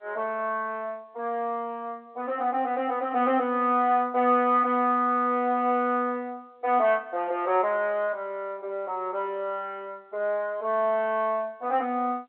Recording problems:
telephone audio; 280 Hz to 3.4 kHz, G.711

